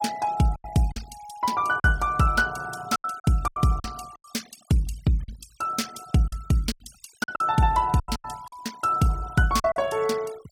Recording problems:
noise reduction artefacts; signal-to-artefact ratio 20 dB
lost packets; 11% of the sound replaced, filled with silence

